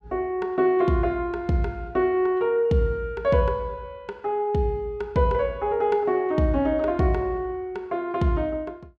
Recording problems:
none

